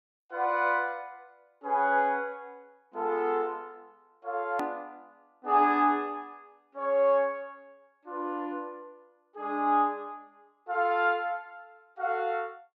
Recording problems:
hard cut with a click; at 4.5 s

